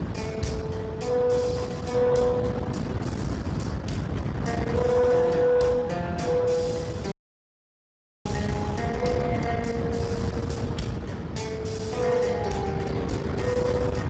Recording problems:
codec artefacts; Speex, log-spectral distance 4 dB, nothing above 7.8 kHz
distorted audio; soft clipping, signal-to-distortion ratio 11 dB
hum; 60 Hz, harmonics up to 660 Hz, SNR 26 dB
wind noise; below 490 Hz, SNR 5 dB
dropout; at 7 s for 1 s

